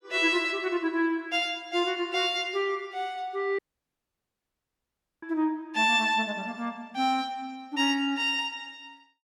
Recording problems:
audio cutting out; at 3.5 s for 1.5 s

